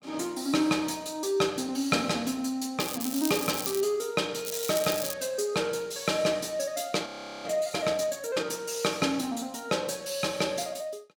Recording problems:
crackling; from 3 to 4 s and at 4.5 s; loose cable, SNR 5 dB
audio freezing; at 7 s

